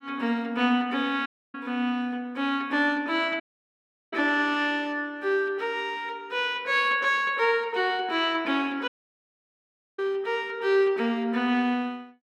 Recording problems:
audio cutting out; at 1.5 s, at 3.5 s for 0.5 s and at 9 s for 1 s

